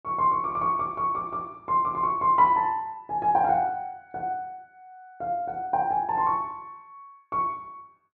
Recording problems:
none

